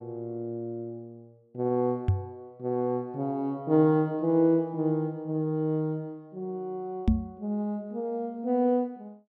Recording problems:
microphone bump; at 2 s and at 7 s; peak +9 dB vs average level

